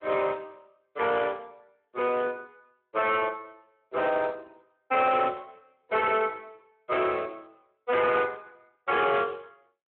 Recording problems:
phone line; 320 Hz to 3.3 kHz, Speex
distorted audio; hard clipping, signal-to-distortion ratio 11 dB

